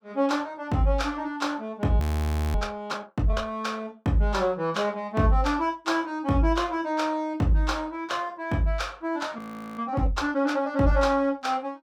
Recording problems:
audio freezing; at 2 s for 0.5 s and at 9.5 s

